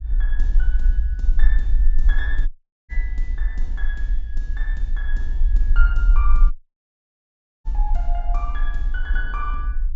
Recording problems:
treble missing; nothing above 8 kHz
rumble; below 44 Hz, strongest tone 18 Hz, SNR -11 dB
audio cutting out; at 2.5 s and at 6.5 s for 1 s

